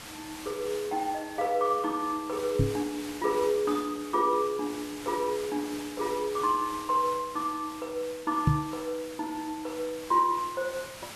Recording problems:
background hiss; slope -1 dB per octave, SNR 13 dB
knock on the microphone; at 2.5 s and at 8.5 s; peak +9 dB vs average level

